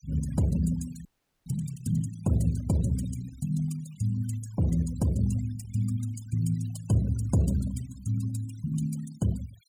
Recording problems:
denoising artefacts; signal-to-artefact ratio 17 dB
audio freezing; at 1 s

